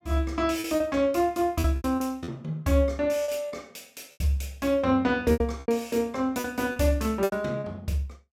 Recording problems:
packet loss; 9% of the sound replaced, filled with repeated pitch periods

